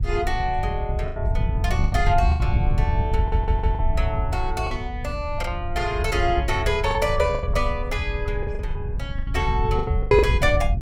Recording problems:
wind noise; below 90 Hz, SNR 1 dB
lost packets; 9% of the sound replaced, filled with the last packet
audio stuttering; at 3 s

